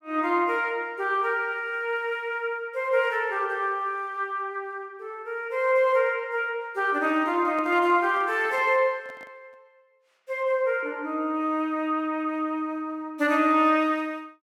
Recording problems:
handling noise; from 7 to 9.5 s; peak -13 dB vs average level

